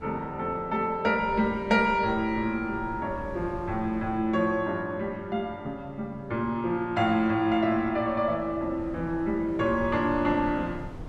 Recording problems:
wind on the microphone; below 260 Hz, SNR 17 dB

